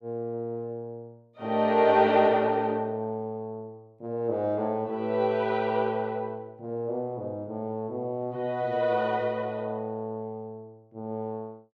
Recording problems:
none

